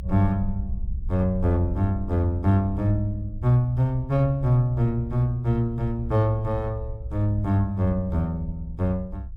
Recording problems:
low-frequency rumble; below 68 Hz, SNR 11 dB

